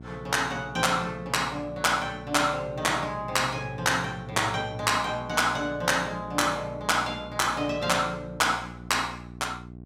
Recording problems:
hum; 60 Hz, harmonics up to 780 Hz, SNR 16 dB

